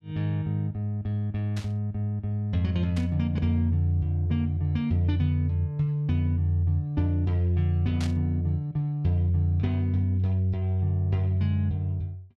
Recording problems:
static burst; at 1.5 s, at 3 s and at 8 s; peak -8 dB vs average level

